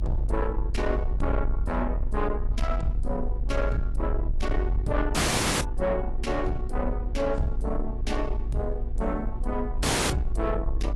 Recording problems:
codec artefacts; AAC, log-spectral distance 2 dB, nothing above 11 kHz
distortion; soft clipping, signal-to-distortion ratio 11 dB
electrical hum; 60 Hz, harmonics up to 1.1 kHz, SNR 14 dB
low-frequency rumble; below 50 Hz, strongest tone 22 Hz, SNR 1 dB
dropout; at 5 s and at 10 s

